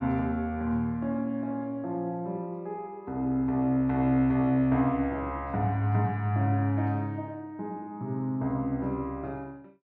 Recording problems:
none

